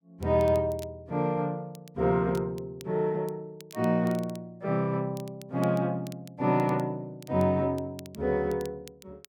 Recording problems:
crackling; vinyl, SNR 24 dB

